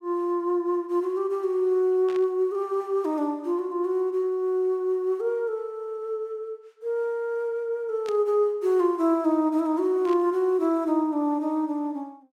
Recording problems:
burst of static; at 2 s, at 8 s and at 10 s; peak -12 dB vs average level

